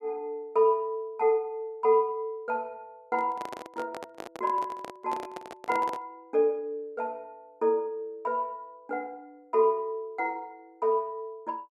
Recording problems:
handling noise; from 3 to 6 s; peak -5 dB vs average level

